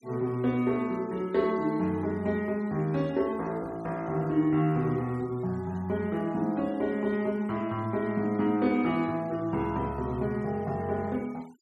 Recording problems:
denoising artefacts; signal-to-artefact ratio 26 dB

